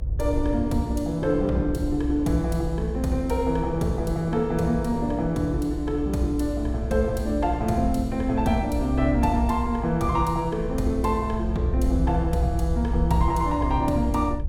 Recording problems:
rumble; below 64 Hz, strongest tone 62 Hz, SNR 6 dB
wind on the microphone; below 460 Hz, SNR 16 dB

